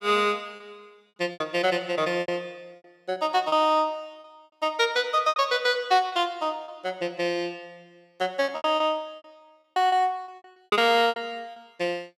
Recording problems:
lost packets; 11% of the sound replaced, filled with repeated pitch periods

